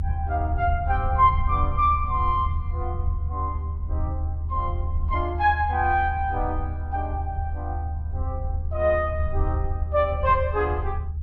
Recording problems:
low-frequency rumble; below 78 Hz, strongest tone 76 Hz, SNR 3 dB

